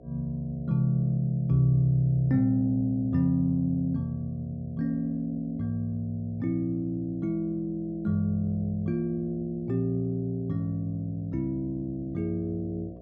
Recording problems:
electrical hum; 60 Hz, harmonics up to 720 Hz, SNR 20 dB

